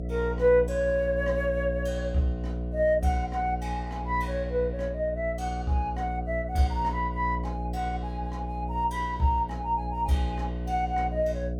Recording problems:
hum; 60 Hz, harmonics up to 720 Hz, SNR 5 dB

